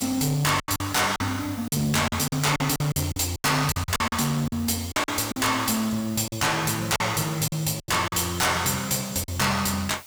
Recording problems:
distortion; hard clipping, uneven, signal-to-distortion ratio 6 dB
hiss; slope +1 dB per octave, SNR 19 dB
lost packets; 11% of the sound replaced, filled with silence

